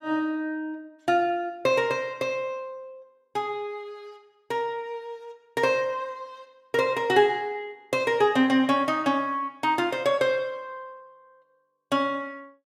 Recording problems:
none

